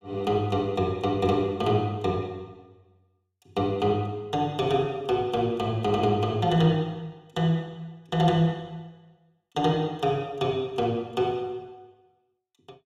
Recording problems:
none

